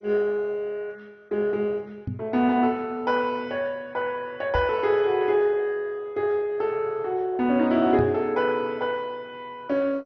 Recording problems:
lossy codec; MP2, log-spectral distance 2 dB, nothing above 5.2 kHz
microphone bump; at 2 s, at 4.5 s and at 8 s; peak -1 dB vs average level

